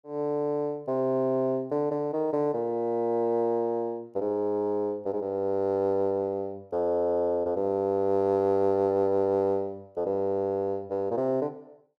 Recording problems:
none

